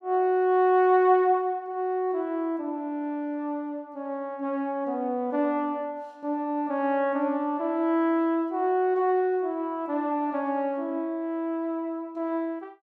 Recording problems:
none

